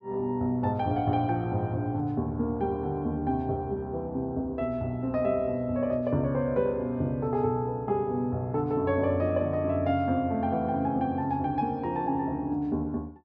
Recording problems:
none

